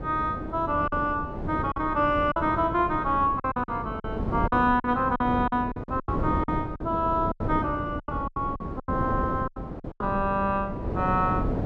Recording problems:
wind noise; below 400 Hz, SNR 6 dB
lost packets; 11% of the sound replaced, filled with silence

